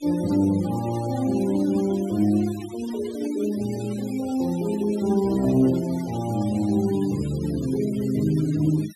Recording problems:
denoising artefacts; signal-to-artefact ratio 19 dB

